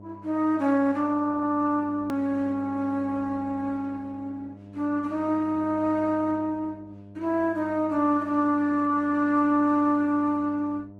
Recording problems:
lossy codec; Opus, log-spectral distance 2 dB
electrical hum; 50 Hz, harmonics up to 900 Hz, SNR 19 dB
hard cut with a click; at 2 s

